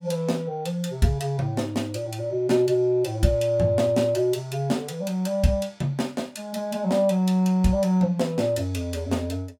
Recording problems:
none

